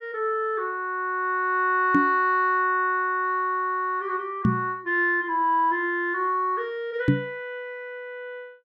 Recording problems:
knock on the microphone; at 2 s, at 4.5 s and at 7 s; peak +8 dB vs average level

